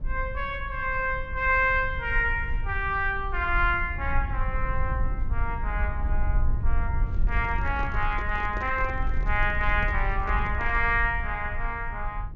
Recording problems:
low-pass filter; nothing above 6.9 kHz
rumble; below 58 Hz, strongest tone 20 Hz, SNR 5 dB
handling noise; from 7 to 11 s; peak -8 dB vs average level

